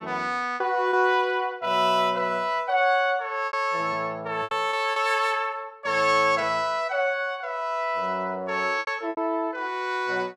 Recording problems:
lost packets; 5% of the sound replaced, filled with repeated pitch periods

